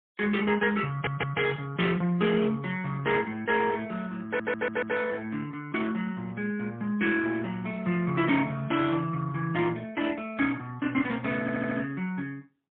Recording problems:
telephone audio; 130 Hz to 3.4 kHz, AMR-NB, then MP3
audio stuttering; at 1 s, at 4.5 s and at 11 s

